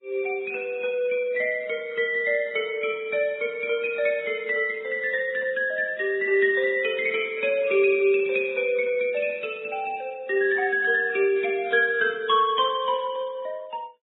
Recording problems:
codec artefacts; AAC, then Vorbis, log-spectral distance 3 dB, nothing above 3.4 kHz

